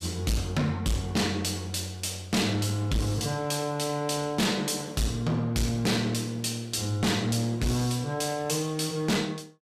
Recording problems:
distortion; hard clipping, signal-to-distortion ratio 6 dB

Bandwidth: 14.5 kHz